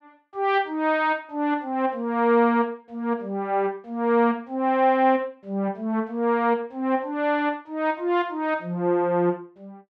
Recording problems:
none

